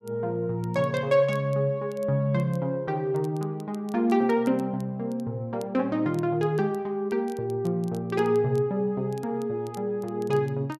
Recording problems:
crackle; vinyl, SNR 28 dB

